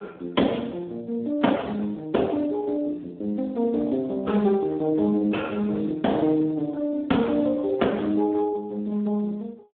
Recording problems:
phone line; 170 Hz to 2.6 kHz, Speex

